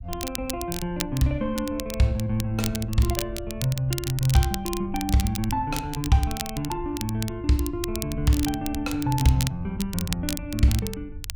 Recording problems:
rumble; below 84 Hz, SNR 13 dB
crackling; vinyl, SNR 9 dB

